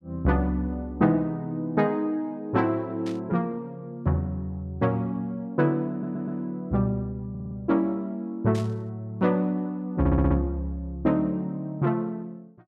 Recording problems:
burst of static; at 3 s and at 8.5 s; peak -11 dB vs average level
stutter; at 6 s, at 7.5 s and at 10 s

